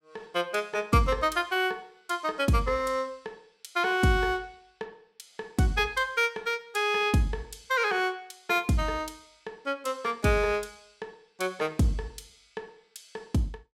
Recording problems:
none

